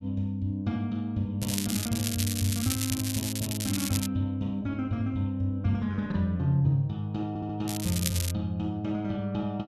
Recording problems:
crackling; from 1.5 to 4 s and at 7.5 s; loose cable, SNR 3 dB
audio stuttering; at 7.5 s

